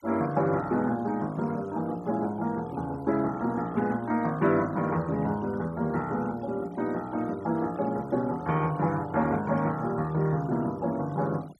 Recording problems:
denoising artefacts; signal-to-artefact ratio 23 dB

